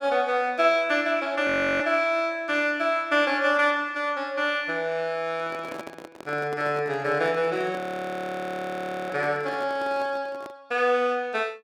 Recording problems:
frozen audio; at 1.5 s and at 8 s for 1.5 s
microphone handling noise; from 5.5 to 11 s; peak -8 dB vs average level

